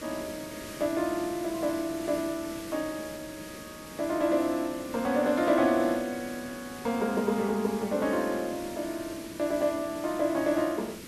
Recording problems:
hiss; SNR 13 dB

